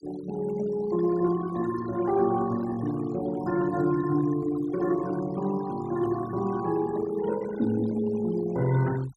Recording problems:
denoising artefacts; signal-to-artefact ratio 17 dB

